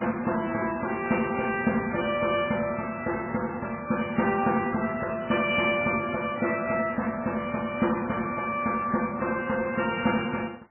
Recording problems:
lossy compression; MP3, log-spectral distance 9 dB, nothing above 2.9 kHz

